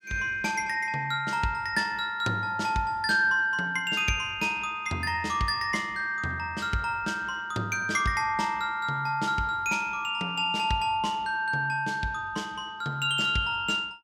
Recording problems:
none

